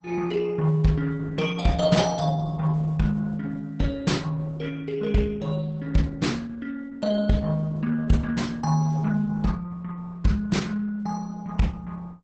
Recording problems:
lossy compression; Opus, log-spectral distance 3 dB, nothing above 8 kHz

